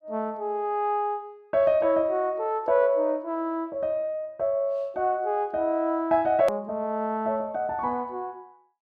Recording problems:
hard cut with a click; at 6.5 s

